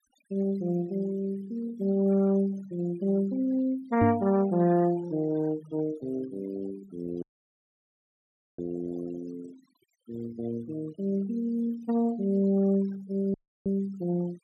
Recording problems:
denoising artefacts; signal-to-artefact ratio 22 dB
microphone bump; at 4 s; peak +5 dB vs average level
dropout; at 7 s for 1.5 s and at 13 s

